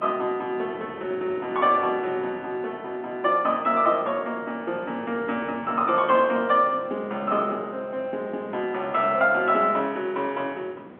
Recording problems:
telephone audio; 240 Hz to 3.5 kHz, G.711
wind on the microphone; below 690 Hz, SNR 19 dB

